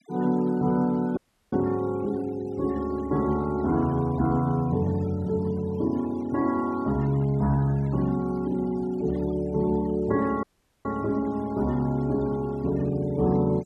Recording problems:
noise reduction artefacts; signal-to-artefact ratio 22 dB
audio cutting out; at 1 s and at 10 s

